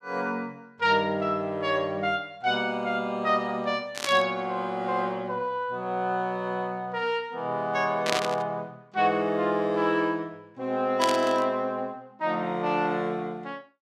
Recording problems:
burst of static; at 4 s, at 8 s and at 11 s; peak +4 dB vs average level

